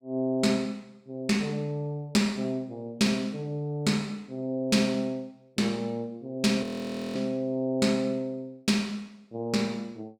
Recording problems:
audio freezing; at 6.5 s for 0.5 s

